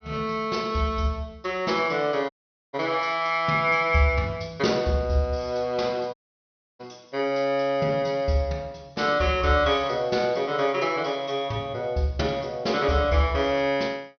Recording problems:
treble missing; nothing above 6.2 kHz
dropout; at 2.5 s and at 6 s for 0.5 s

